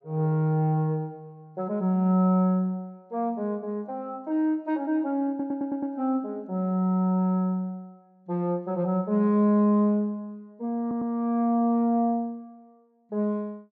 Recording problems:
audio stuttering; at 5.5 s and at 11 s

